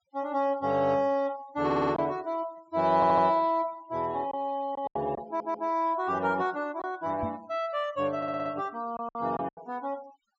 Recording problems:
low-pass filter; nothing above 7.7 kHz
noise reduction artefacts; signal-to-artefact ratio 23 dB
lost packets; 4% of the sound replaced, filled with silence
audio stuttering; 4 times, first at 1.5 s
knock on the microphone; at 7 s; peak -3 dB vs average level

